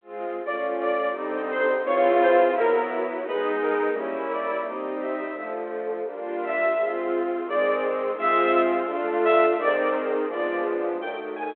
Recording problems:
telephone audio; 320 Hz to 3.5 kHz, G.726

